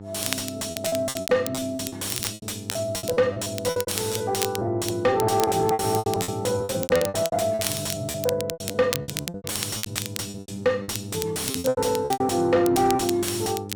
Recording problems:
distortion; soft clipping, signal-to-distortion ratio 6 dB
electrical hum; 50 Hz, harmonics up to 900 Hz, SNR 14 dB
crackle; vinyl, SNR 9 dB
packet loss; 19% of the sound replaced, filled with repeated pitch periods

